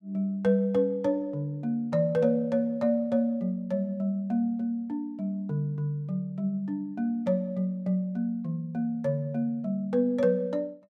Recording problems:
none

